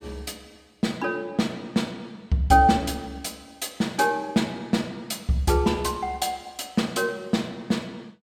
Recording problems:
none

